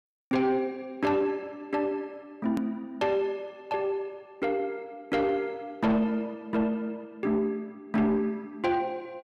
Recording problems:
distorted audio; soft clipping, signal-to-distortion ratio 11 dB
click at an edit; at 2.5 s

